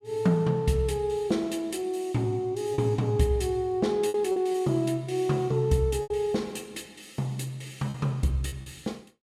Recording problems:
lost packets; 4% of the sound replaced, filled with repeated pitch periods

